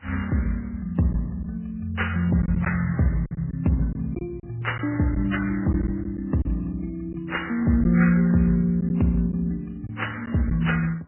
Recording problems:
lossy codec; MP3, then AAC, log-spectral distance 5 dB, nothing above 2.9 kHz
packet loss; 4% of the sound replaced, filled with silence

